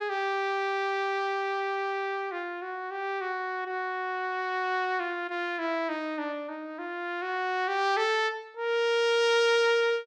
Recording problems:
none

